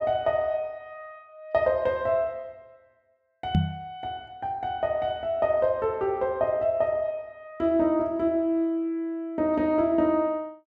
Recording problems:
knock on the microphone; at 3.5 s; peak +6 dB vs average level

